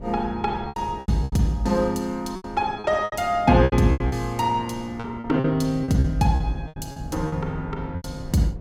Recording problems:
wind noise; below 190 Hz, SNR 16 dB
packet loss; 13% of the sound replaced, filled with repeated pitch periods

